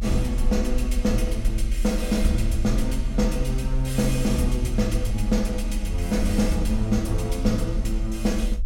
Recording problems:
rumble; below 48 Hz, strongest tone 36 Hz, SNR 3 dB

